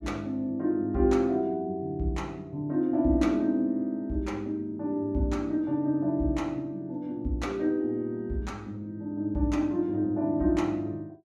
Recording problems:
none

